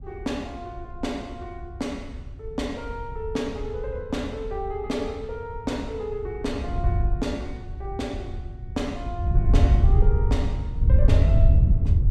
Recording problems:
wind on the microphone; below 88 Hz, SNR -8 dB

